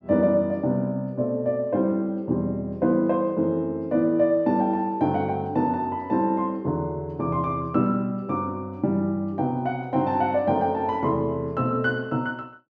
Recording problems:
none

